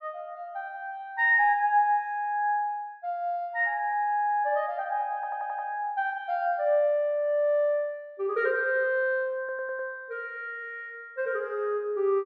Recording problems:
stutter; at 5 s and at 9.5 s

